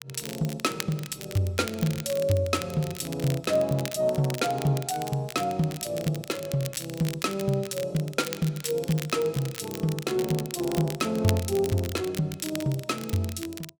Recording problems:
crackle; vinyl, SNR 12 dB

